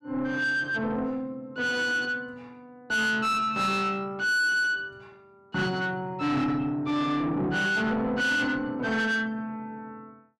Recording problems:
distorted audio; soft clipping, signal-to-distortion ratio 7 dB

